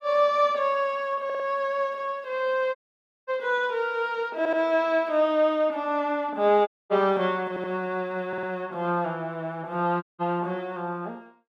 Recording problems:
stutter; 4 times, first at 1.5 s
dropout; at 3 s for 0.5 s, at 6.5 s and at 10 s

